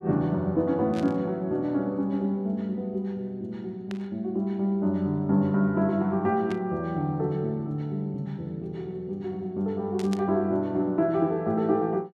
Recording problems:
burst of static; 4 times, first at 1 s; peak -8 dB vs average level

